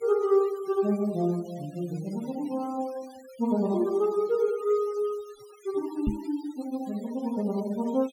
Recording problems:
denoising artefacts; signal-to-artefact ratio 23 dB
microphone thump; at 6 s; peak +4 dB vs average level

